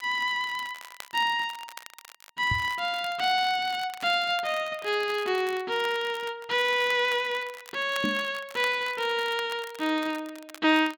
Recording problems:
crackling; vinyl, SNR 19 dB
knock on the microphone; at 2.5 s and at 8 s; peak +1 dB vs average level

